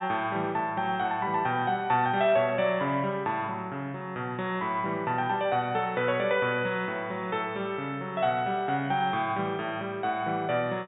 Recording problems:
treble cut off; nothing above 4 kHz

